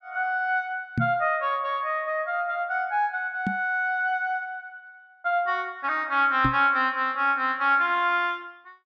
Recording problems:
microphone thump; at 1 s, at 3.5 s and at 6.5 s; peak +2 dB vs average level

